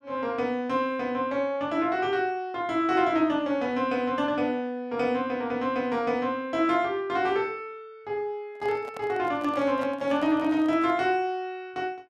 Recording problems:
microphone handling noise; from 8.5 to 11 s; peak -9 dB vs average level

